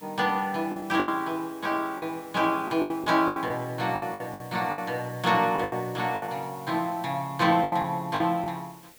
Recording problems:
background hiss; SNR 22 dB
packet loss; 11% of the sound replaced, filled with the last packet

